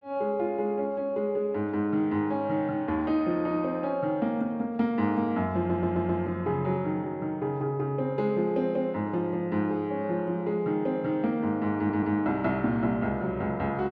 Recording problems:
stutter; at 5.5 s and at 12 s

